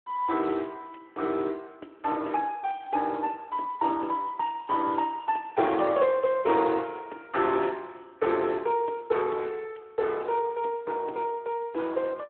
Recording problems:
telephone audio; 260 Hz to 3.5 kHz, Speex

